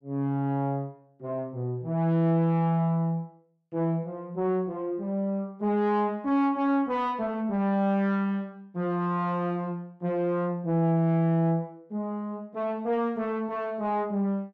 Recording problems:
distortion; soft clipping, signal-to-distortion ratio 10 dB

